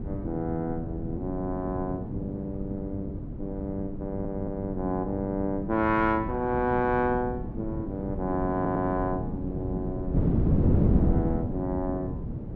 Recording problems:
wind on the microphone; below 250 Hz, SNR 1 dB
stutter; at 4 s and at 8.5 s

